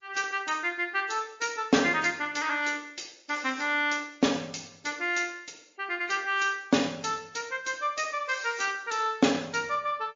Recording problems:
lossy compression; G.722, then MP3, log-spectral distance 7 dB, nothing above 6.5 kHz

